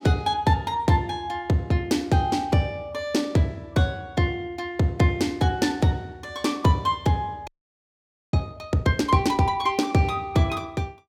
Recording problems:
audio freezing; at 7.5 s for 1 s

